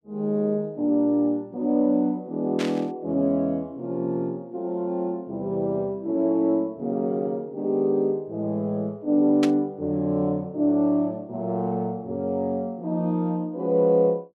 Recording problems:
burst of static; at 2.5 s and at 9.5 s; peak -2 dB vs average level

